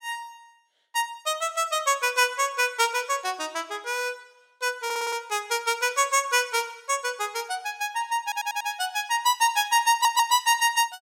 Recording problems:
stutter; at 5 s, at 8 s and at 10 s

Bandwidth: 16.5 kHz